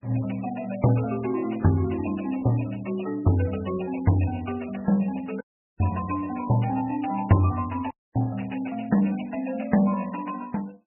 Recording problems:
lossy compression; MP3, log-spectral distance 10 dB, nothing above 2.7 kHz
audio cutting out; at 5.5 s and at 8 s

